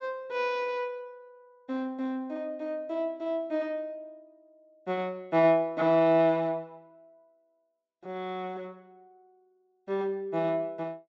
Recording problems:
low-pass filter; nothing above 8 kHz

